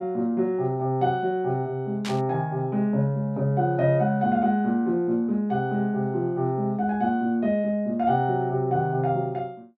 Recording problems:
static burst; at 2 s; peak -6 dB vs average level

